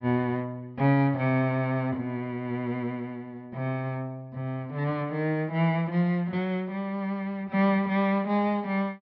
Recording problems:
treble cut off; nothing above 5.5 kHz

